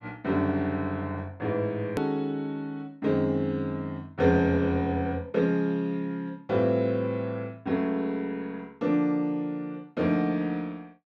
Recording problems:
click at an edit; at 2 s

